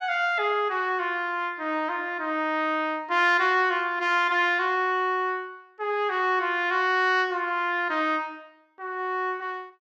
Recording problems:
none

